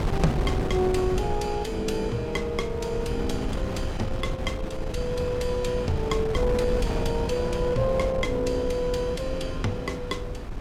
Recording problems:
wind on the microphone; below 220 Hz, SNR 4 dB

